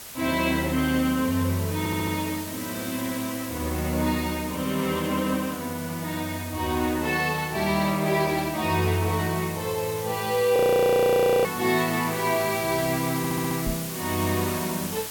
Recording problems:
hiss; slope -1 dB per octave, SNR 10 dB
audio stuttering; at 2 s and at 13 s
audio freezing; at 11 s for 1 s
knock on the microphone; at 14 s; peak -3 dB vs average level

